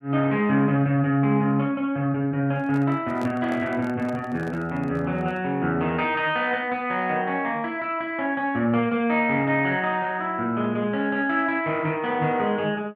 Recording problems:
microphone handling noise; from 2.5 to 5.5 s; peak -8 dB vs average level

